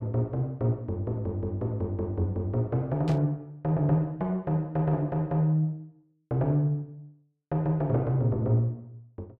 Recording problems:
burst of static; at 3 s; peak -11 dB vs average level

